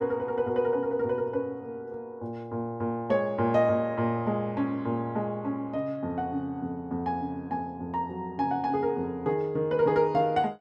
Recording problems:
none

